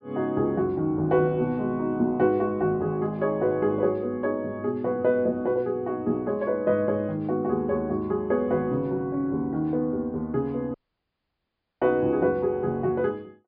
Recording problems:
treble cut off; nothing above 5.1 kHz
audio cutting out; at 11 s for 1 s

